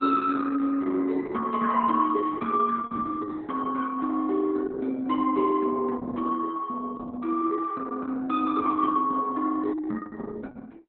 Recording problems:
lossy codec; Opus, log-spectral distance 4 dB, nothing above 3.9 kHz

